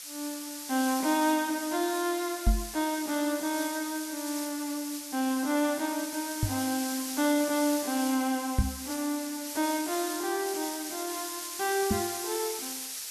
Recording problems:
background hiss; slope +4 dB per octave, SNR 6 dB
microphone bump; 4 times, first at 2.5 s; peak +8 dB vs average level

